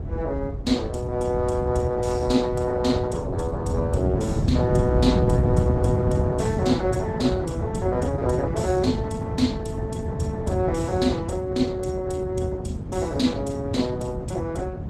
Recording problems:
lossy compression; Opus, log-spectral distance 2 dB, nothing above 18.9 kHz
low-frequency rumble; below 150 Hz, SNR -1 dB

